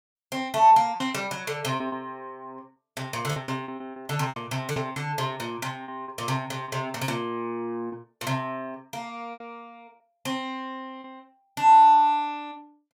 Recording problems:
lost packets; 8% of the sound replaced, filled with repeated pitch periods

